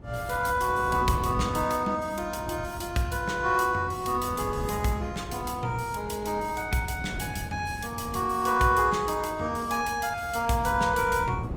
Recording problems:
lossy codec; Opus, log-spectral distance 4 dB
wind on the microphone; below 240 Hz, SNR 12 dB

